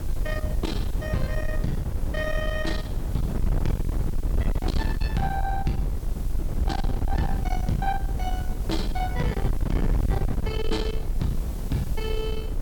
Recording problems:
distorted audio; soft clipping, signal-to-distortion ratio 6 dB
hiss; SNR 18 dB
wind noise; below 96 Hz, SNR -1 dB

